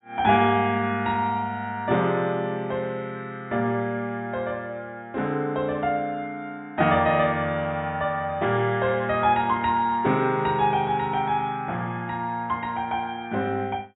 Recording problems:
treble missing; nothing above 4 kHz

